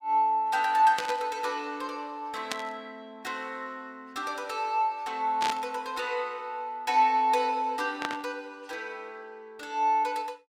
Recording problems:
burst of static; 4 times, first at 1 s; peak +1 dB vs average level

